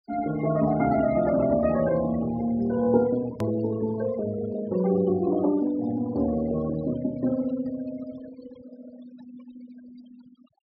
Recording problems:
low-pass filter; nothing above 5.5 kHz
noise reduction artefacts; signal-to-artefact ratio 17 dB
edit click; at 3.5 s

